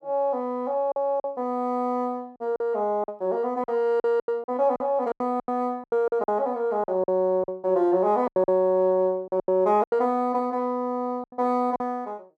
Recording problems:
packet loss; 11% of the sound replaced, filled with silence

